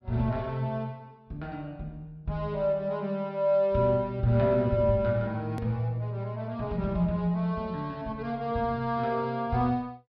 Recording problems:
treble missing; nothing above 5.5 kHz
hard cut with a click; at 5.5 s

